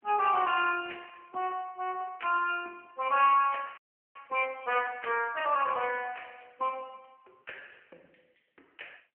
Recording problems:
telephone audio; 320 Hz to 3.1 kHz, AMR-NB
audio freezing; at 4 s

